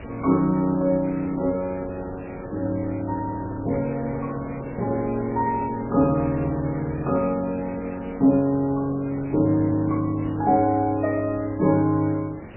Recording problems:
lossy compression; MP3, log-spectral distance 6 dB, nothing above 2.5 kHz
hiss; SNR 14 dB

